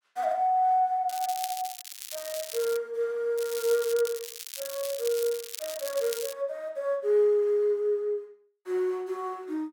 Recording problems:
crackle; from 1 to 3 s and from 3.5 to 6.5 s; loose cable, SNR 10 dB

